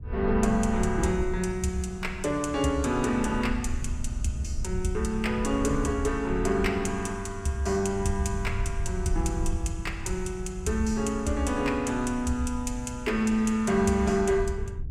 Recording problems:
wind on the microphone; below 80 Hz, SNR 8 dB

